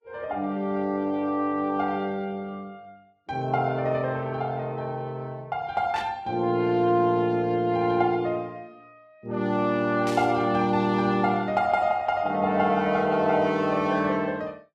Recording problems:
lossy compression; Vorbis, log-spectral distance 2 dB
static burst; at 6 s and at 10 s; peak -8 dB vs average level

